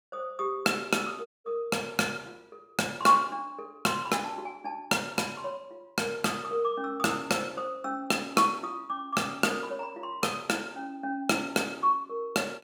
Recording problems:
audio cutting out; at 1.5 s

